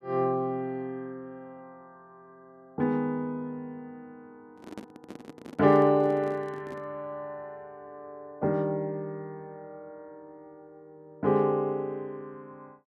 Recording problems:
microphone handling noise; from 4.5 to 7 s; peak -8 dB vs average level

